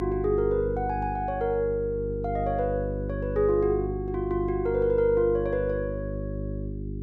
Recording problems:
mains hum; 50 Hz, harmonics up to 400 Hz, SNR 7 dB

